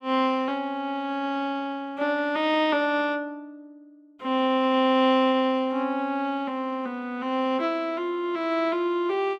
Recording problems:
none

